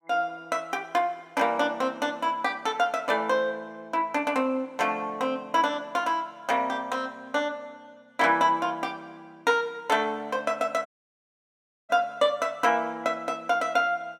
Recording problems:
dropout; at 11 s for 1 s

